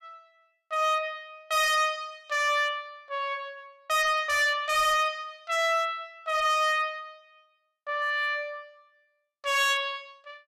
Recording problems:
distortion; hard clipping, signal-to-distortion ratio 8 dB

